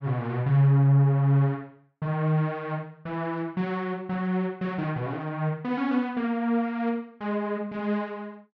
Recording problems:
none

